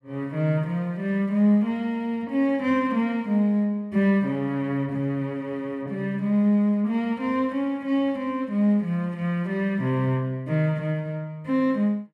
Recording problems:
none

